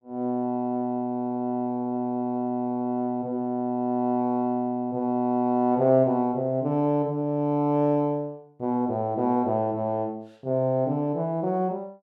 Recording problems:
none

